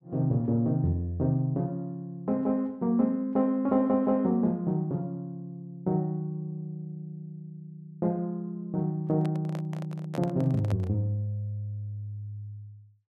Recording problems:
handling noise; from 9 to 11 s; peak -5 dB vs average level

